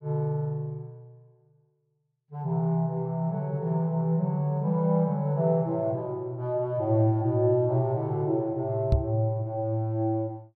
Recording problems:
microphone bump; at 9 s; peak +7 dB vs average level

